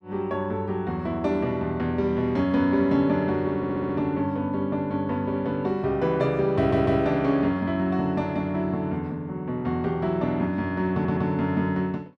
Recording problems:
stutter; at 3.5 s, at 6.5 s and at 11 s

